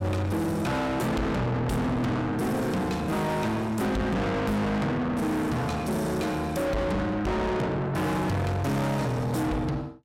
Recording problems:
distortion; soft clipping, signal-to-distortion ratio 6 dB

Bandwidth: 16 kHz